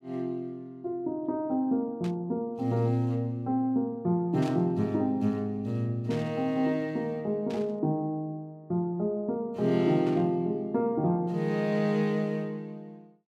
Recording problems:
static burst; 5 times, first at 2 s; peak -11 dB vs average level

